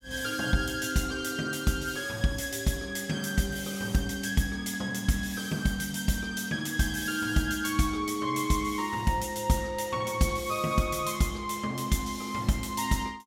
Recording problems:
none

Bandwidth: 16.5 kHz